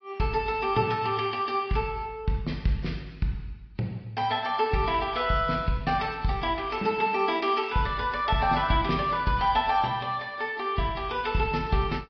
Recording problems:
treble missing; nothing above 5.2 kHz
codec artefacts; AAC, log-spectral distance 3 dB

